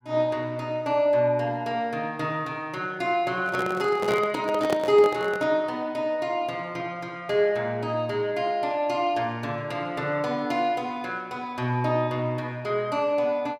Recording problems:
microphone handling noise; from 3.5 to 5.5 s; peak +2 dB vs average level

